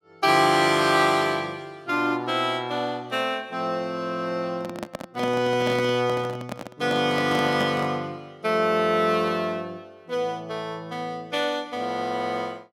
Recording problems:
microphone handling noise; from 4.5 to 8 s; peak -3 dB vs average level

